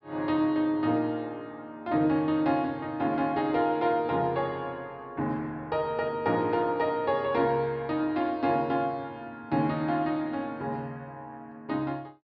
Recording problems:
low-pass filter; nothing above 5.5 kHz

